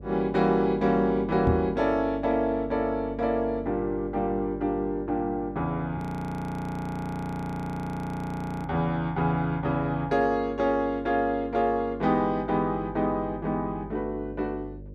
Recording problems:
mains hum; 50 Hz, harmonics up to 600 Hz, SNR 16 dB
microphone thump; at 1.5 s; peak +5 dB vs average level
frozen audio; at 6 s for 2.5 s

